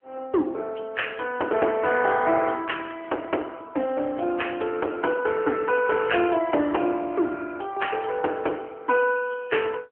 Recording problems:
phone line; 260 Hz to 3.2 kHz, AMR-NB

